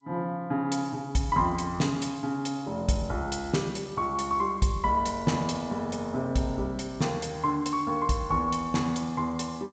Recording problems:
lossy compression; G.722, log-spectral distance 2 dB, nothing above 7.6 kHz

